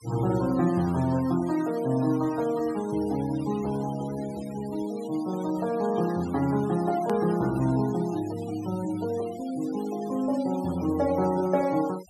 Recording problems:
noise reduction artefacts; signal-to-artefact ratio 18 dB
click at an edit; at 7 s

